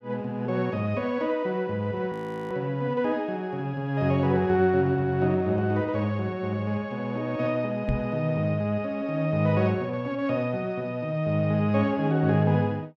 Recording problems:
audio freezing; at 2 s
knock on the microphone; at 8 s; peak +1 dB vs average level

